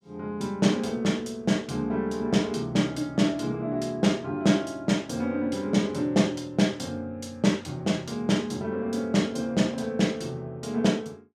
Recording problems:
none

